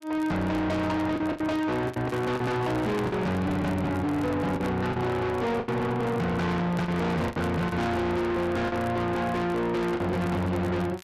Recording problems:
distortion; soft clipping, signal-to-distortion ratio 6 dB
crackle; vinyl, SNR 25 dB
packet loss; 7% of the sound replaced, filled with the last packet
handling noise; from 2 to 3.5 s; peak -7 dB vs average level

